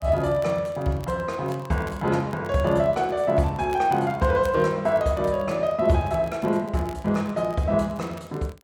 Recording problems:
crackling; vinyl, SNR 27 dB

